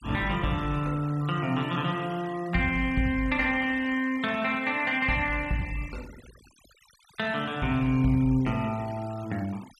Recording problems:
noise reduction artefacts; signal-to-artefact ratio 21 dB

